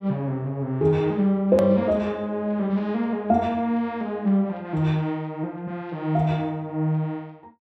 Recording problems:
edit click; at 1.5 s

